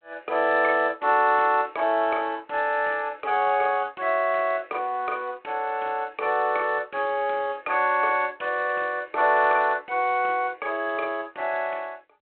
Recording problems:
telephone audio; 340 Hz to 3.6 kHz, G.726

